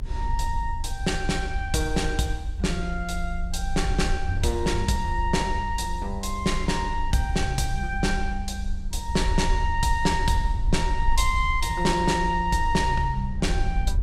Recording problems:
low-frequency rumble; below 60 Hz, strongest tone 22 Hz, SNR 4 dB

